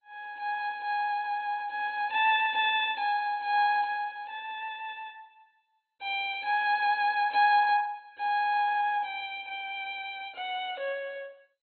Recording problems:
lossy codec; MP2, log-spectral distance 3 dB, nothing above 3.5 kHz

